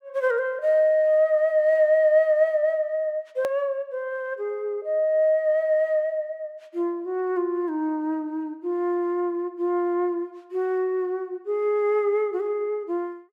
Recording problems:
click at an edit; at 3.5 s

